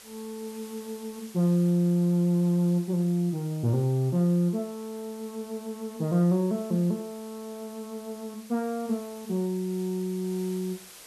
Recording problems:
background hiss; slope 0 dB per octave, SNR 20 dB

